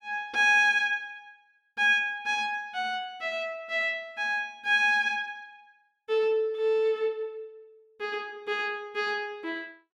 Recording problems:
none

